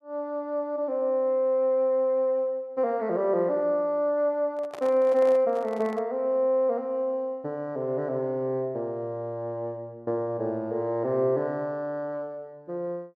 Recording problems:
handling noise; from 4.5 to 6 s; peak -9 dB vs average level

